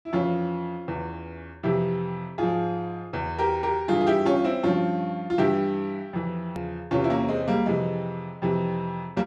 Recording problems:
hard cut with a click; at 6.5 s

